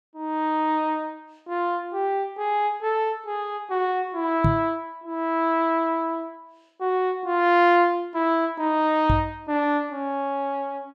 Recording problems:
microphone thump; at 4.5 s and at 9 s; peak +5 dB vs average level

